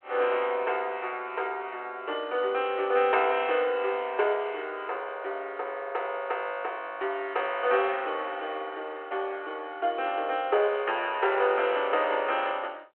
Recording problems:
telephone audio; 340 Hz to 3.5 kHz, G.726

